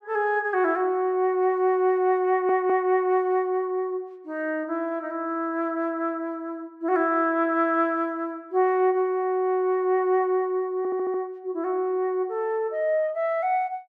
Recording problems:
stutter; at 2.5 s and at 11 s

